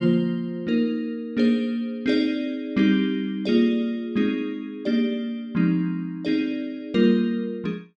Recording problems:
none

